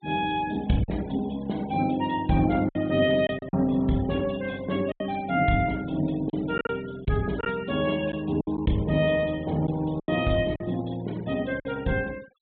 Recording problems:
treble missing; nothing above 4 kHz
denoising artefacts; signal-to-artefact ratio 22 dB
lost packets; 6% of the sound replaced, filled with silence

